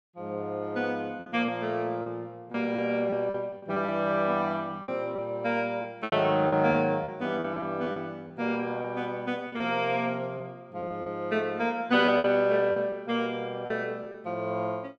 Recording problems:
packet loss; 8% of the sound replaced, filled with repeated pitch periods

